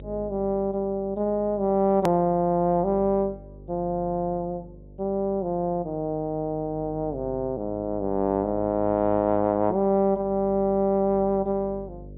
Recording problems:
low-pass filter; nothing above 3.8 kHz
hum; 50 Hz, harmonics up to 600 Hz, SNR 20 dB
hard cut with a click; at 2 s

